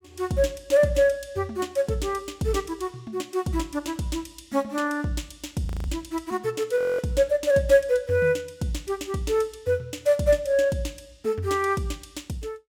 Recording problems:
frozen audio; at 5.5 s and at 7 s

